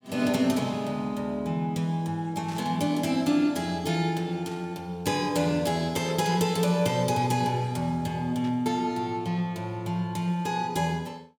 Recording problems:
burst of static; 4 times, first at 2.5 s; peak -14 dB vs average level

